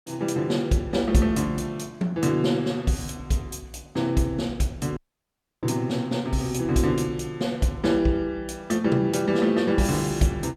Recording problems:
dropout; at 5 s for 0.5 s

